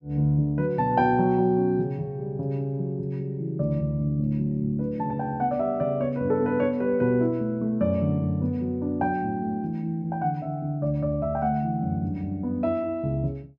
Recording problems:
none

